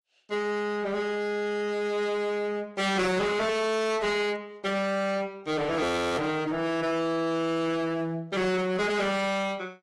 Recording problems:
lossy codec; AAC, log-spectral distance 2 dB, nothing above 11.3 kHz
distortion; hard clipping, signal-to-distortion ratio 6 dB
audio freezing; at 6 s

